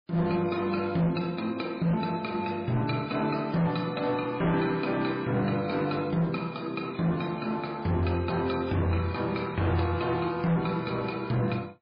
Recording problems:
codec artefacts; MP3, log-spectral distance 4 dB, nothing above 4.2 kHz
distortion; hard clipping, signal-to-distortion ratio 11 dB

